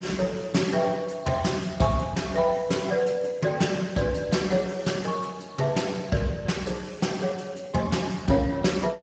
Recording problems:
lossy codec; Speex, log-spectral distance 5 dB, nothing above 7.6 kHz

